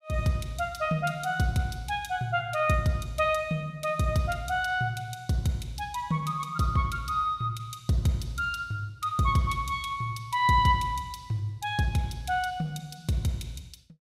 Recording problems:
none

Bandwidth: 15.5 kHz